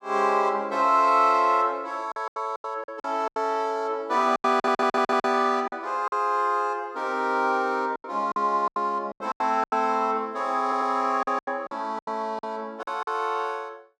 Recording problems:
packet loss; 10% of the sound replaced, filled with silence
stutter; at 4.5 s and at 11 s

